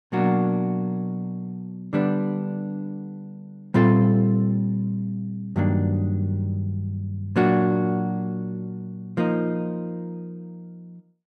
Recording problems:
none

